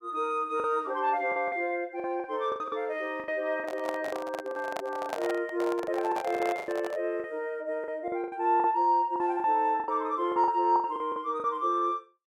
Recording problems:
lost packets; 12% of the sound replaced, filled with the last packet
microphone handling noise; from 3.5 to 7 s; peak +1 dB vs average level

